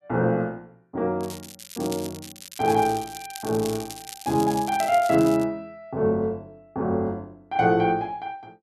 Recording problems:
crackle; from 1 to 5.5 s; loose cable, SNR 14 dB

